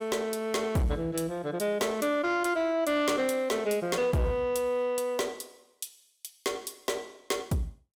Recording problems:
distorted audio; soft clipping, signal-to-distortion ratio 11 dB

